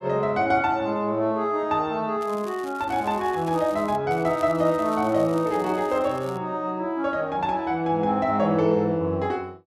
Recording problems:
crackle; from 2 to 4 s and from 4 to 6.5 s; loose cable, SNR 23 dB

